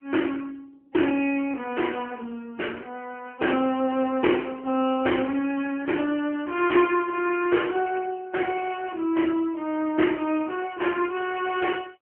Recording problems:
telephone audio; 220 Hz to 3.1 kHz, AMR-NB

